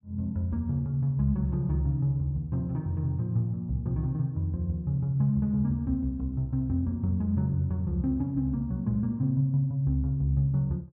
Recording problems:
none

